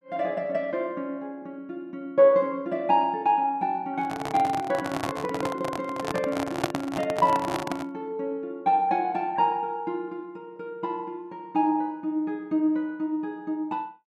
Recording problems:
microphone handling noise; from 4 to 8 s; peak +4 dB vs average level

